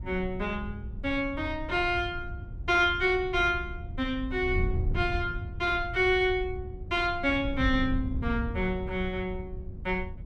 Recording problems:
wind noise; below 98 Hz, SNR 8 dB

